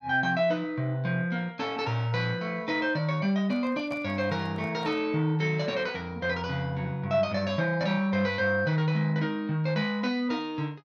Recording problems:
microphone handling noise; from 3.5 to 5 s; peak -11 dB vs average level

